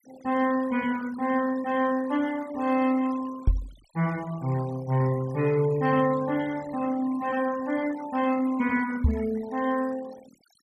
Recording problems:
denoising artefacts; signal-to-artefact ratio 18 dB
microphone thump; at 3.5 s and at 9 s; peak +7 dB vs average level

